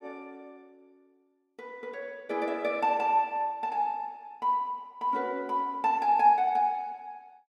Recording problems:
none

